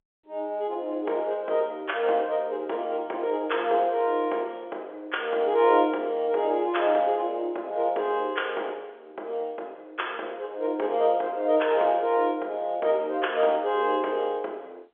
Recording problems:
phone line; 320 Hz to 3.5 kHz, G.711

